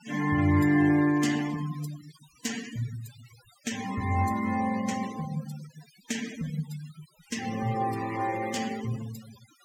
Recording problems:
noise reduction artefacts; signal-to-artefact ratio 14 dB

